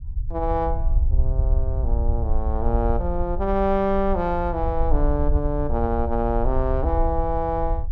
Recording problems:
low-frequency rumble; below 62 Hz, SNR 1 dB

